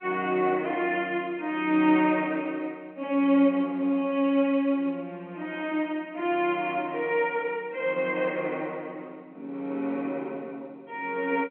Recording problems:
telephone audio; 220 Hz to 3.2 kHz, G.711

